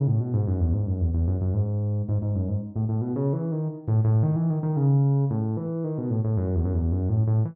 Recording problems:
none

